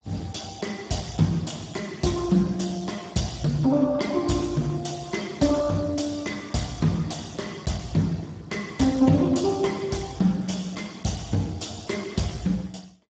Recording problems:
lossy codec; Speex, log-spectral distance 5 dB, nothing above 7.6 kHz

